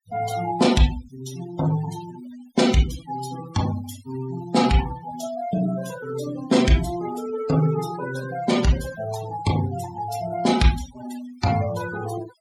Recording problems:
denoising artefacts; signal-to-artefact ratio 13 dB

